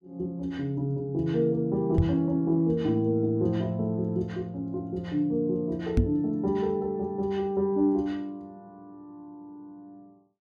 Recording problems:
knock on the microphone; at 2 s and at 6 s; peak +8 dB vs average level

